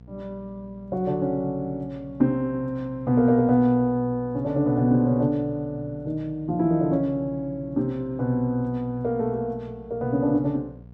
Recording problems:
electrical hum; 60 Hz, harmonics up to 720 Hz, SNR 21 dB

